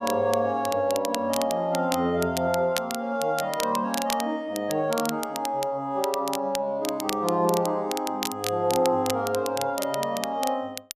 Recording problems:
crackle; vinyl, SNR 9 dB

